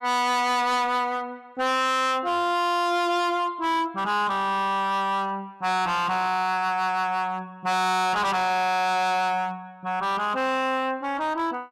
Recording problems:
distorted audio; hard clipping, signal-to-distortion ratio 7 dB

